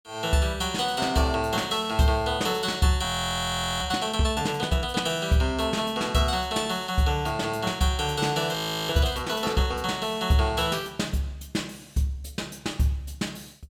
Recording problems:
frozen audio; at 3 s for 1 s and at 8.5 s

